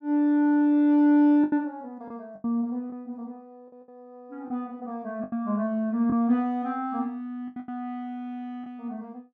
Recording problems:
packet loss; 6% of the sound replaced, filled with the last packet

